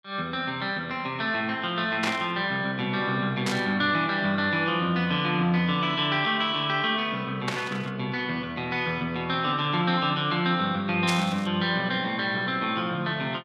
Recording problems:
burst of static; 4 times, first at 2 s; peak +1 dB vs average level

